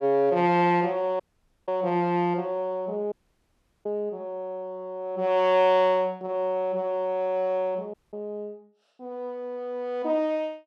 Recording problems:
dropout; at 1 s, at 3 s for 0.5 s and at 8 s

